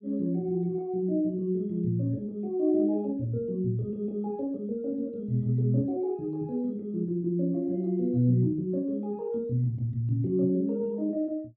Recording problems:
none

